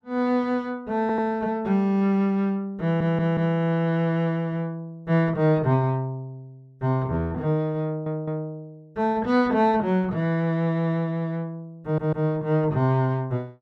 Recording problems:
audio stuttering; 4 times, first at 1 s

